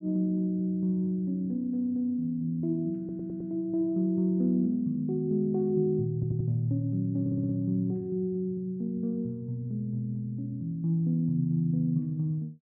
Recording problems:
treble missing; nothing above 3.2 kHz
stutter; at 3 s, at 6 s and at 7 s

